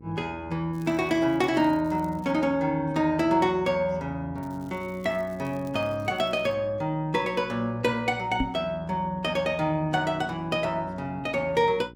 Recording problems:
hum; 60 Hz, harmonics up to 540 Hz, SNR 22 dB
crackle; from 0.5 to 2.5 s and from 4.5 to 6.5 s; loose cable, SNR 29 dB
knock on the microphone; at 8.5 s; peak +3 dB vs average level

